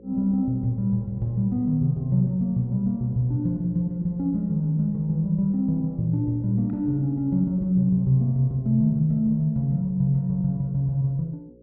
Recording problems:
electrical hum; 60 Hz, harmonics up to 540 Hz, SNR 28 dB

